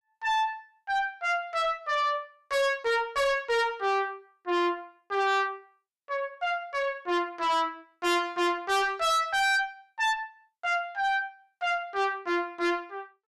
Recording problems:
distorted audio; soft clipping, signal-to-distortion ratio 6 dB

